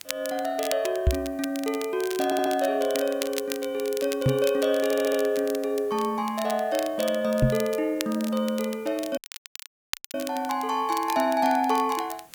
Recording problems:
hiss; slope -3 dB per octave, SNR 27 dB
crackle; vinyl, SNR 12 dB
microphone thump; at 1 s, at 4.5 s and at 7.5 s; peak +7 dB vs average level
stutter; at 2 s and at 5 s
dropout; at 9 s for 1 s

